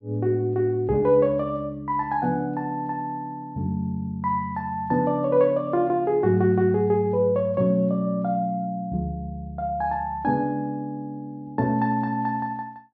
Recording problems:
none

